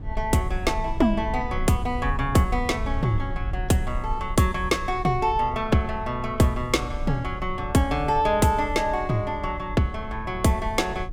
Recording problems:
rumble; below 76 Hz, SNR 10 dB

